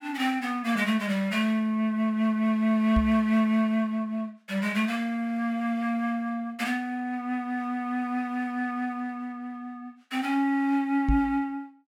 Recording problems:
knock on the microphone; at 3 s and at 11 s; peak +4 dB vs average level

